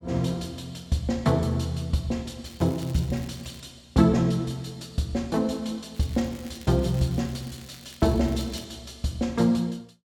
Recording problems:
crackling; from 2.5 to 3.5 s and from 6 to 8.5 s; loose cable, SNR 22 dB

